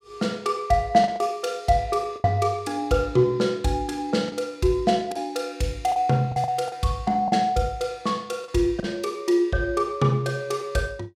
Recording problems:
lost packets; 5% of the sound replaced, filled with the last packet

